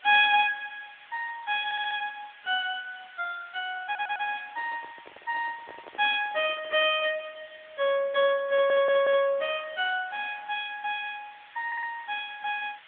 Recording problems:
phone line; 240 Hz to 3.7 kHz, AMR-NB
hiss; SNR 23 dB
stutter; 4 times, first at 1.5 s
microphone handling noise; from 4.5 to 7 s; peak -15 dB vs average level

